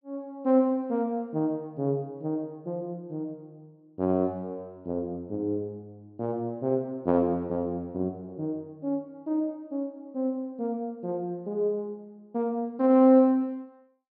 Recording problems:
low-pass filter; nothing above 5.3 kHz

